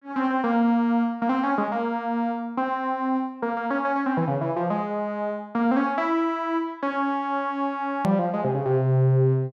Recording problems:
click at an edit; at 8 s

